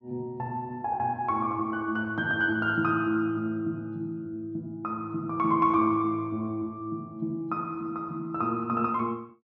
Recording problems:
none

